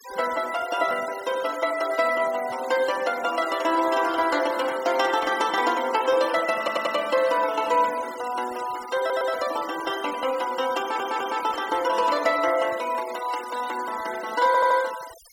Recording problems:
denoising artefacts; signal-to-artefact ratio 15 dB
stutter; 4 times, first at 6.5 s

